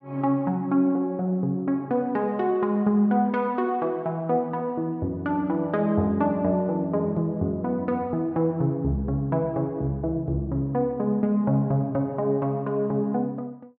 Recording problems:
none

